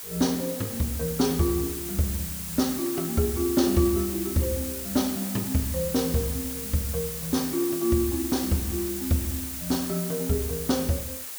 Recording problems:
background hiss; slope +1 dB per octave, SNR 5 dB

